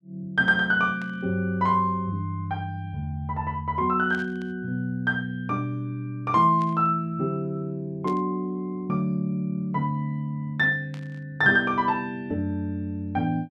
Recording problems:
static burst; 5 times, first at 1 s; peak -15 dB vs average level

